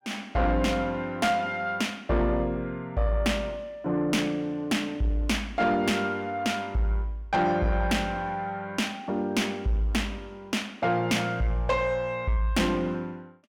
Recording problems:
distorted audio; soft clipping, signal-to-distortion ratio 11 dB

